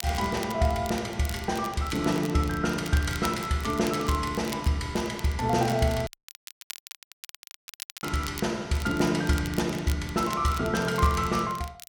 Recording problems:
crackle; vinyl, SNR 16 dB
dropout; at 6 s for 2 s

